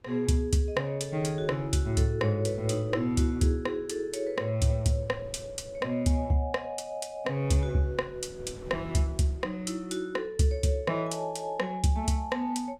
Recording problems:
wind noise; below 280 Hz, SNR 21 dB

